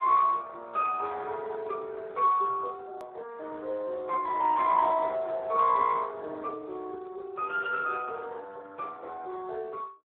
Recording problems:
phone line; 340 Hz to 2 kHz, Speex
edit click; at 3 s

